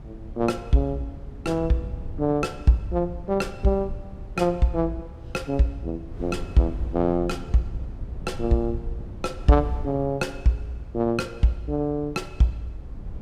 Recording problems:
rumble; below 100 Hz, SNR 15 dB
wind noise; below 110 Hz, SNR 17 dB

